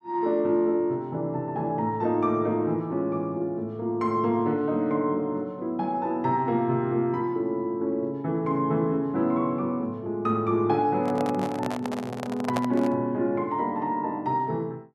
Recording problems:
handling noise; from 11 to 13 s; peak +1 dB vs average level

